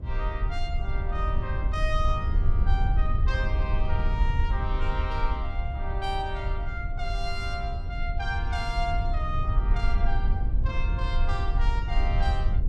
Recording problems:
low-frequency rumble; below 66 Hz, SNR -5 dB

